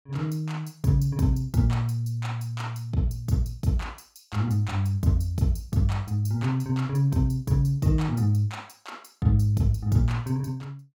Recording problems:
none

